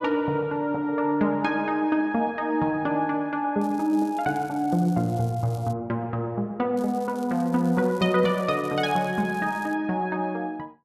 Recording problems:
crackle; from 3.5 to 5.5 s and from 7 to 10 s; loose cable, SNR 25 dB

